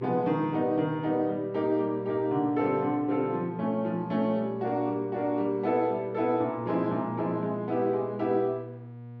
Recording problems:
hum; 60 Hz, harmonics up to 960 Hz, SNR 16 dB

